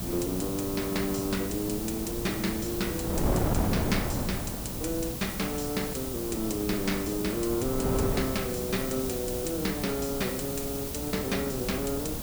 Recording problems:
hum; 60 Hz, harmonics up to 1.1 kHz, SNR 11 dB
background hiss; slope +3 dB per octave, SNR 5 dB
wind on the microphone; below 450 Hz, SNR 4 dB

